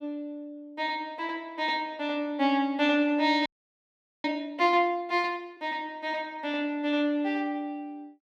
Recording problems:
frozen audio; at 3.5 s for 1 s

